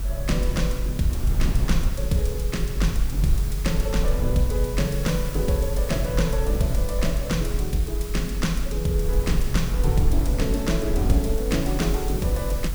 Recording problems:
hiss; SNR 12 dB
rumble; below 52 Hz, SNR 0 dB

